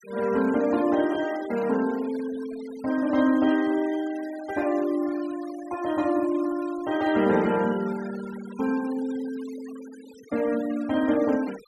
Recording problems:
denoising artefacts; signal-to-artefact ratio 18 dB

